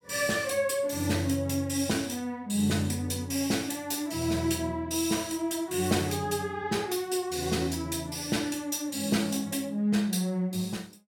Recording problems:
none

